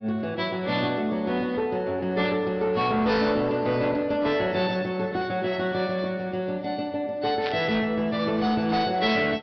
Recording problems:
treble missing; nothing above 5.3 kHz
codec artefacts; AAC, log-spectral distance 2 dB
distortion; soft clipping, signal-to-distortion ratio 12 dB
burst of static; at 7.5 s; peak -4 dB vs average level

